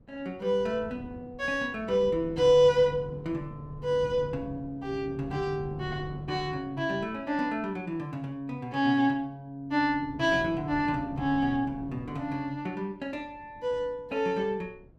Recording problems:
wind on the microphone; below 290 Hz, SNR 16 dB

